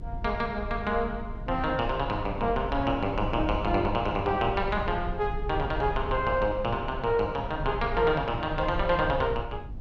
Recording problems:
rumble; below 84 Hz, SNR 9 dB

